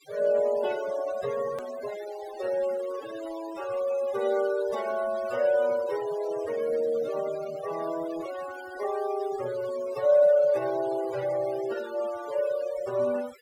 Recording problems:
noise reduction artefacts; signal-to-artefact ratio 15 dB
hard cut with a click; at 1.5 s

